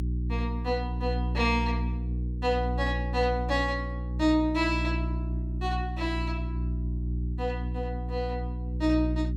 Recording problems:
electrical hum; 60 Hz, harmonics up to 360 Hz, SNR 2 dB

